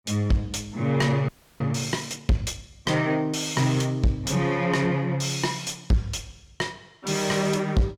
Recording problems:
distortion; soft clipping, signal-to-distortion ratio 7 dB
frozen audio; at 1.5 s

